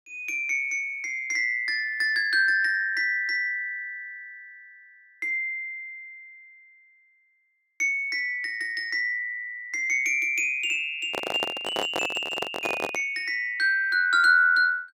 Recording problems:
handling noise; from 11 to 13 s; peak -1 dB vs average level

